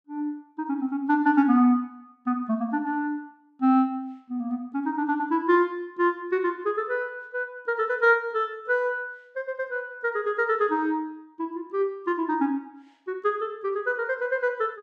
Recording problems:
none

